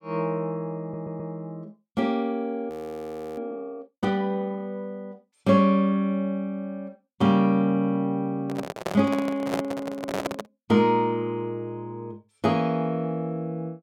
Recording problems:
stutter; at 1 s
audio freezing; at 2.5 s for 0.5 s
microphone handling noise; from 8.5 to 10 s; peak +1 dB vs average level

